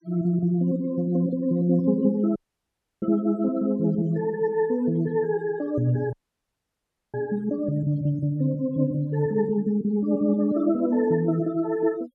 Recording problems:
denoising artefacts; signal-to-artefact ratio 25 dB
audio cutting out; at 2.5 s for 0.5 s and at 6 s for 1 s

